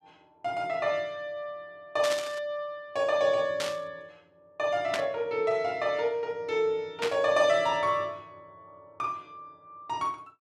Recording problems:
burst of static; 4 times, first at 2 s; peak +1 dB vs average level

